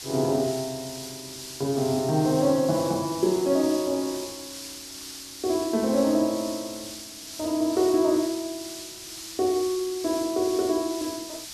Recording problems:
hiss; slope +3 dB per octave, SNR 11 dB

